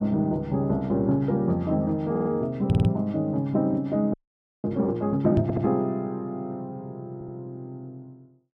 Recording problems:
stutter; 4 times, first at 2 s
microphone thump; at 2.5 s and at 5.5 s; peak +7 dB vs average level
frozen audio; at 4 s for 0.5 s

